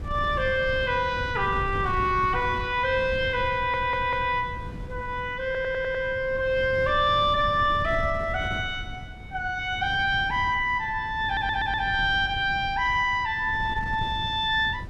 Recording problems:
wind noise; below 150 Hz, SNR 13 dB
stutter; at 3.5 s, at 5.5 s and at 11 s

